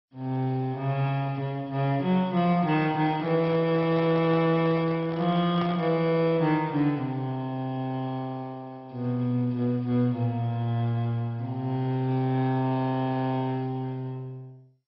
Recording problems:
codec artefacts; MP2, log-spectral distance 2 dB, nothing above 5.2 kHz
handling noise; from 3 to 6 s; peak -6 dB vs average level

